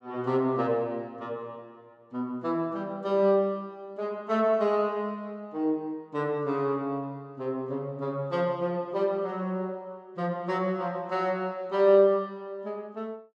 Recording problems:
none

